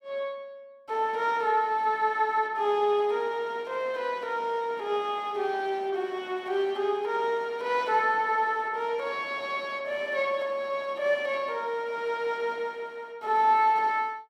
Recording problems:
none

